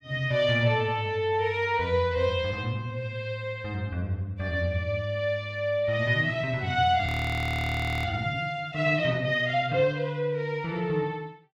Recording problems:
audio freezing; at 7 s for 1 s

